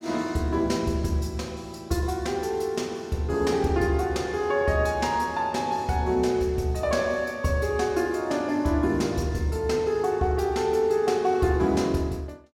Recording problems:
none

